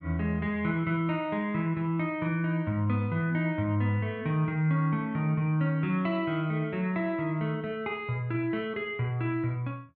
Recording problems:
none

